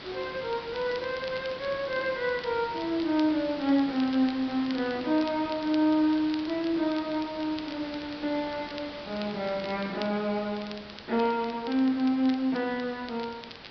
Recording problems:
treble missing; nothing above 5.5 kHz
background hiss; SNR 13 dB
crackle; vinyl, SNR 19 dB

